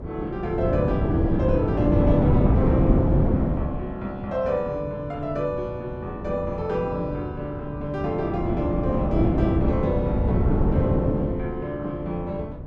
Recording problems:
wind on the microphone; below 270 Hz, SNR -3 dB

